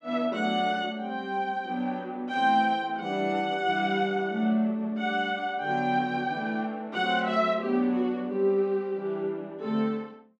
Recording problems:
none

